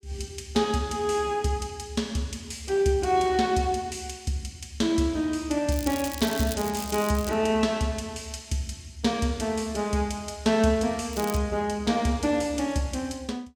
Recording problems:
crackling; from 5.5 to 7.5 s and at 11 s; loose cable, SNR 11 dB

